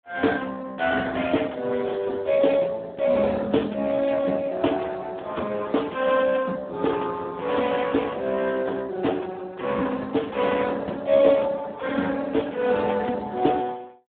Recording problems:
phone line; 220 Hz to 3.5 kHz, Speex

